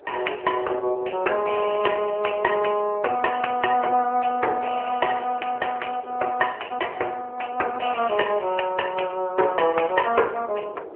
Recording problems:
phone line; 320 Hz to 2.9 kHz, AMR-NB
wind noise; below 640 Hz, SNR 18 dB

